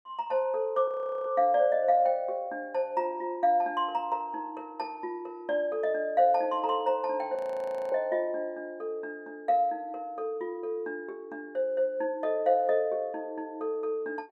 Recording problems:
frozen audio; at 1 s and at 7.5 s for 0.5 s

